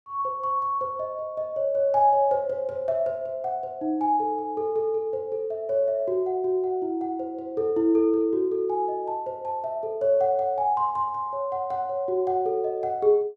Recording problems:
none

